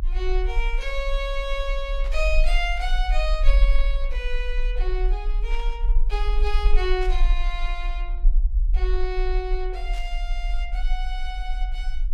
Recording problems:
low-frequency rumble; below 38 Hz, strongest tone 24 Hz, SNR -4 dB
burst of static; 4 times, first at 2 s; peak -10 dB vs average level

